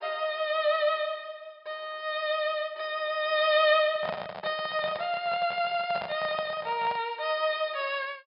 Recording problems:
treble cut off; nothing above 5.5 kHz
microphone handling noise; from 4 to 7 s; peak -1 dB vs average level

